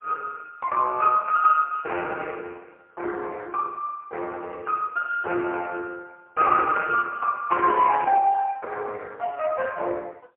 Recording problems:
phone line; 370 Hz to 2.5 kHz, AMR-NB, then MP3

